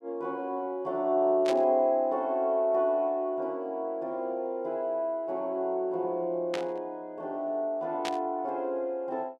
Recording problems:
burst of static; at 1.5 s, at 6.5 s and at 8 s; peak -2 dB vs average level

